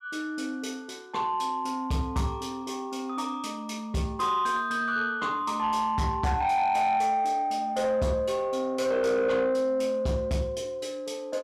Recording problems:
distorted audio; soft clipping, signal-to-distortion ratio 12 dB

